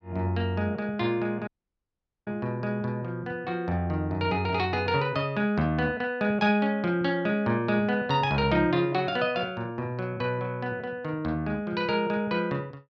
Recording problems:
dropout; at 1.5 s for 1 s

